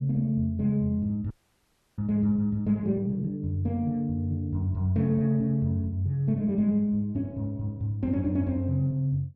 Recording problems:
audio freezing; at 1.5 s for 0.5 s

